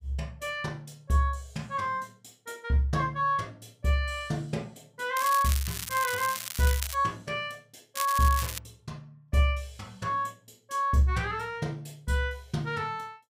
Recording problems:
crackle; from 5 to 7 s and at 8 s; loose cable, SNR 6 dB

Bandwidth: 15.5 kHz